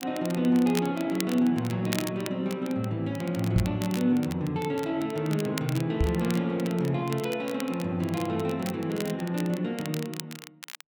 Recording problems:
crackling; vinyl, SNR 13 dB
microphone thump; at 3.5 s and at 6 s; peak +5 dB vs average level

